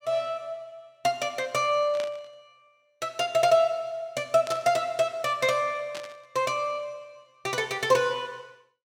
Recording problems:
static burst; at 2 s, at 4.5 s and at 6 s; peak -8 dB vs average level

